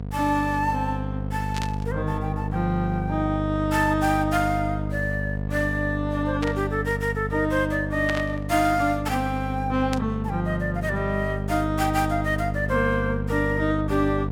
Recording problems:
hum; 50 Hz, harmonics up to 750 Hz, SNR 4 dB
burst of static; 4 times, first at 1.5 s; peak -2 dB vs average level

